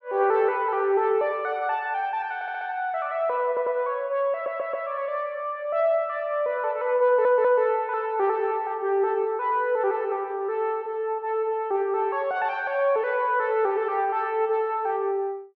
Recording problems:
stutter; 4 times, first at 2.5 s

